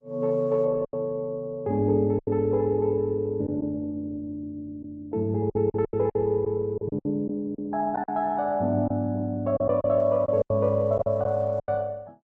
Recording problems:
lossy compression; Opus, log-spectral distance 2 dB
lost packets; 8% of the sound replaced, filled with silence

